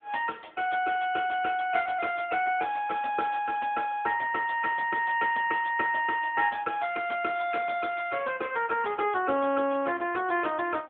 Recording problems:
telephone audio; 240 Hz to 3.2 kHz, AMR-NB

